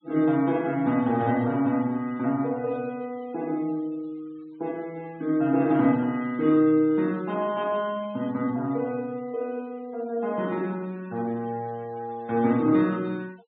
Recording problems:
low-pass filter; nothing above 4 kHz
noise reduction artefacts; signal-to-artefact ratio 26 dB

